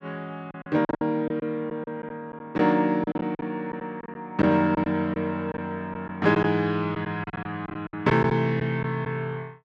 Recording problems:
packet loss; 10% of the sound replaced, filled with silence

